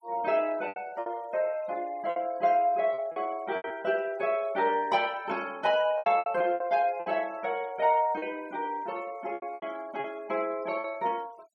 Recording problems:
noise reduction artefacts; signal-to-artefact ratio 25 dB
packet loss; 9% of the sound replaced, filled with repeated pitch periods

